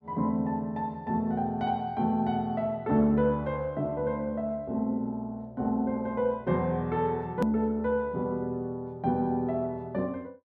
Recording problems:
click at an edit; at 7.5 s

